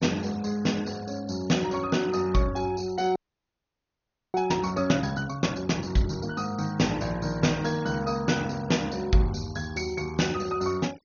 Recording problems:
treble cut off; nothing above 6.7 kHz
noise reduction artefacts; signal-to-artefact ratio 21 dB
audio freezing; at 3 s for 1 s

